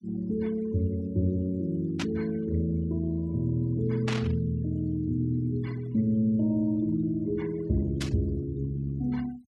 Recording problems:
noise reduction artefacts; signal-to-artefact ratio 26 dB
burst of static; at 2 s, at 4 s and at 8 s; peak -1 dB vs average level

